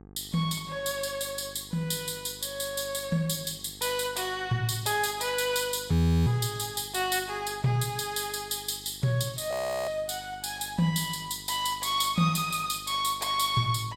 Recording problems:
hum; 50 Hz, harmonics up to 1.3 kHz, SNR 22 dB
frozen audio; at 6 s and at 9.5 s

